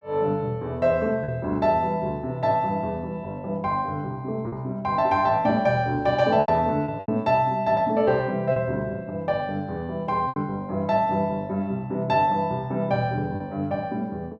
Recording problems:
lost packets; 3% of the sound replaced, filled with repeated pitch periods

